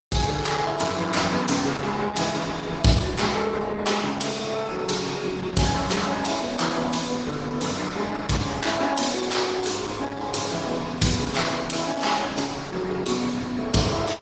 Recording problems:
codec artefacts; AAC, then Opus, log-spectral distance 6 dB, nothing above 7.6 kHz

